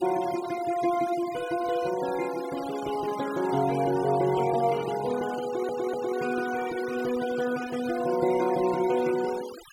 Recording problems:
noise reduction artefacts; signal-to-artefact ratio 15 dB
audio stuttering; at 5.5 s

